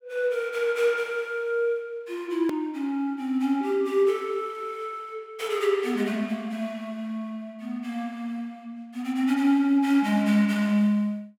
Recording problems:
hard cut with a click; at 2.5 s

